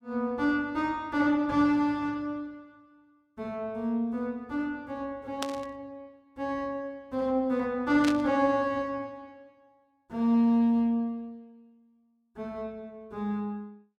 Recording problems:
static burst; at 5.5 s and at 8 s; peak -1 dB vs average level

